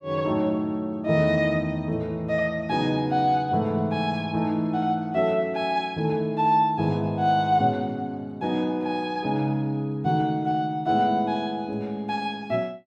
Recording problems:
none

